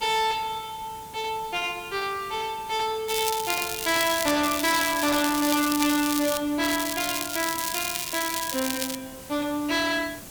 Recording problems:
distortion; hard clipping, uneven, signal-to-distortion ratio 5 dB
hiss; SNR 16 dB
crackling; from 3 to 4.5 s, from 4.5 to 6.5 s and from 6.5 to 9 s; loose cable, SNR 3 dB

